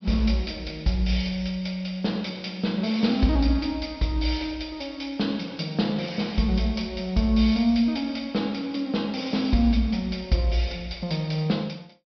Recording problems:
treble cut off; nothing above 5.5 kHz

